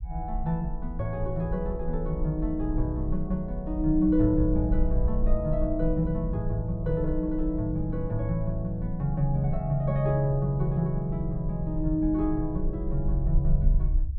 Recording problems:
rumble; below 54 Hz, SNR 5 dB

